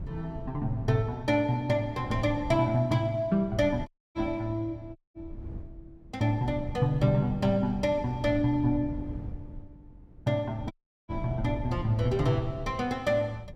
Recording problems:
wind noise; below 140 Hz, SNR 13 dB
audio cutting out; at 4 s, at 5 s and at 11 s

